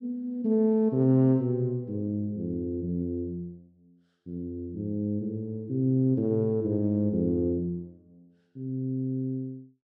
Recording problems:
none

